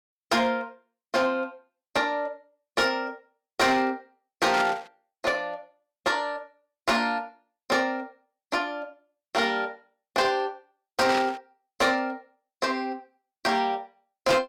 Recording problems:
distortion; hard clipping, signal-to-distortion ratio 12 dB
static burst; at 4.5 s and at 11 s; peak 0 dB vs average level

